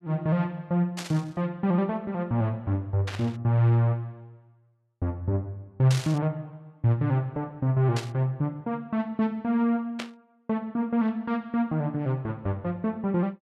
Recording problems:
static burst; 5 times, first at 1 s; peak -2 dB vs average level

